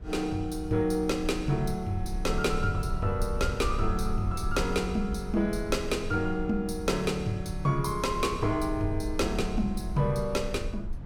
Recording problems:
rumble; below 74 Hz, SNR 8 dB

